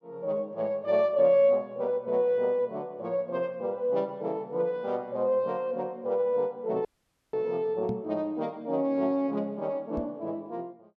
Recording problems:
audio cutting out; at 7 s
knock on the microphone; at 8 s and at 10 s; peak -2 dB vs average level

